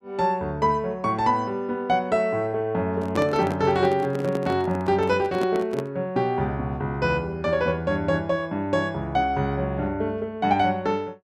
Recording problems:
microphone handling noise; from 3 to 6 s; peak -1 dB vs average level

